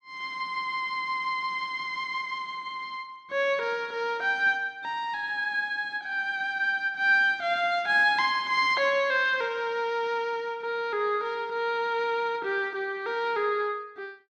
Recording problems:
none

